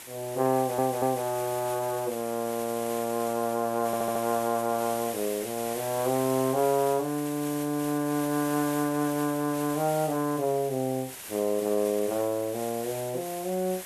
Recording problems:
hiss; slope -1 dB per octave, SNR 11 dB
stutter; at 0.5 s and at 4 s

